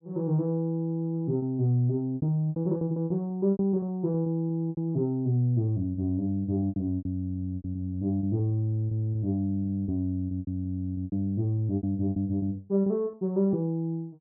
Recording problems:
packet loss; 14% of the sound replaced, filled with repeated pitch periods

